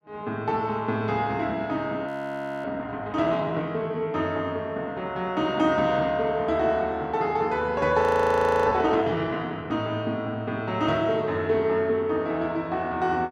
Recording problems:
frozen audio; at 2 s for 0.5 s and at 8 s for 0.5 s

